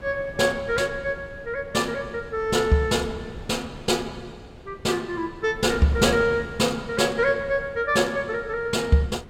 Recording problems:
wind noise; below 370 Hz, SNR 18 dB

